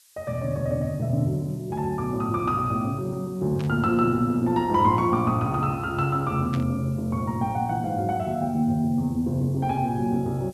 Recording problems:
background hiss; slope +5 dB per octave, SNR 29 dB
static burst; at 3.5 s and at 6.5 s; peak -10 dB vs average level

